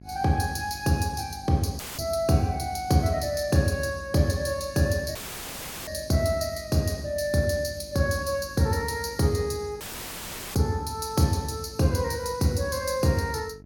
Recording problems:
electrical hum; 50 Hz, harmonics up to 700 Hz, SNR 22 dB
dropout; at 2 s, at 5 s for 0.5 s and at 10 s for 1 s; filled with static

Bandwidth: 17.5 kHz